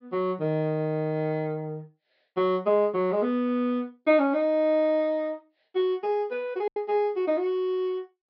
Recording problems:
low-pass filter; nothing above 5.5 kHz
packet loss; 1.1% of the sound replaced, filled with silence

